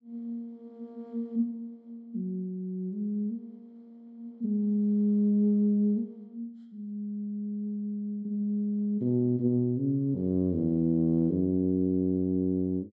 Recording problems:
none

